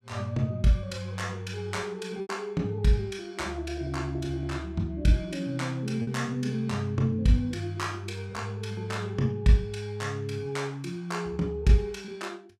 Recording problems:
packet loss; 1.1% of the sound replaced, filled with repeated pitch periods

